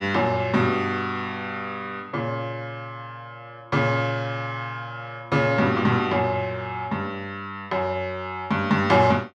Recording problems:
none

